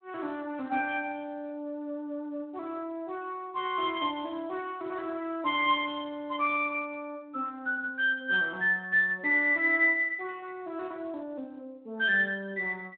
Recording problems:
phone line; 220 Hz to 3.5 kHz, Speex

